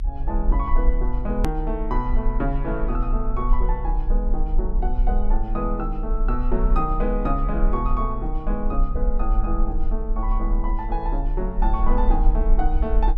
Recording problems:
rumble; below 38 Hz, strongest tone 34 Hz, SNR -2 dB
click at an edit; at 1.5 s

